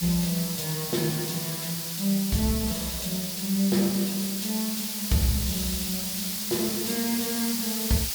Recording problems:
background hiss; slope +3 dB per octave, SNR 1 dB

